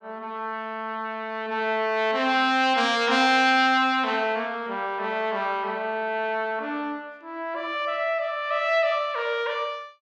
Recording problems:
none

